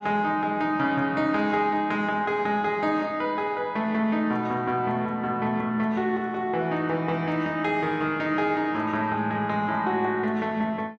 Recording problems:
none

